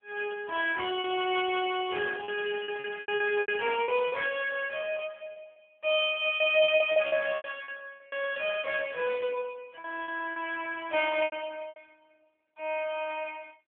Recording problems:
telephone audio; 320 Hz to 3.3 kHz, AMR-NB
packet loss; 9% of the sound replaced, filled with repeated pitch periods

